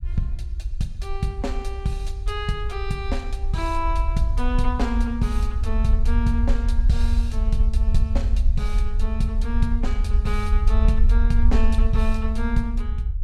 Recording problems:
rumble; below 60 Hz, SNR -4 dB

